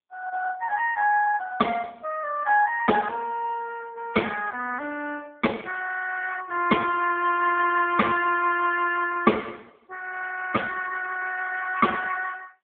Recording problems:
phone line; 190 Hz to 2.8 kHz, AMR-NB

